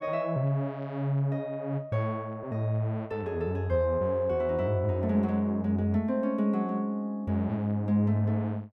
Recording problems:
none

